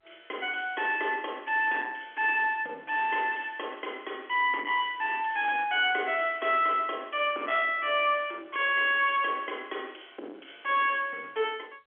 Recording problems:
phone line; 260 Hz to 3.4 kHz, G.711
distortion; soft clipping, signal-to-distortion ratio 11 dB

